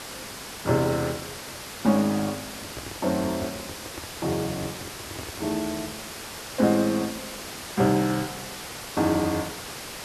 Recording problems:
hiss; slope -2 dB per octave, SNR 9 dB
handling noise; from 2.5 to 6 s; peak -6 dB vs average level

